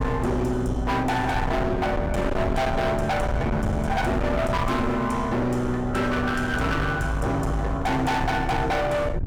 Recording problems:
distortion; hard clipping, uneven, signal-to-distortion ratio 6 dB
rumble; below 310 Hz, SNR 6 dB

